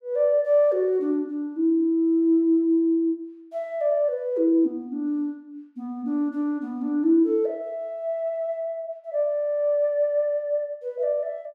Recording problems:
none

